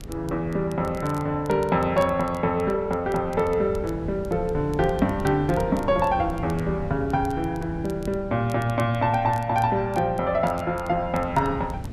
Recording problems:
wind on the microphone; below 170 Hz, SNR 13 dB
crackle; vinyl, SNR 26 dB

